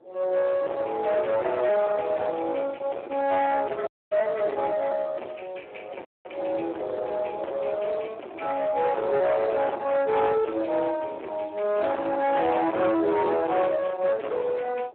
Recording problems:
telephone audio; 300 Hz to 3.1 kHz, Speex
distortion; soft clipping, signal-to-distortion ratio 7 dB
wind on the microphone; below 860 Hz, SNR 18 dB
frozen audio; at 4 s and at 6 s

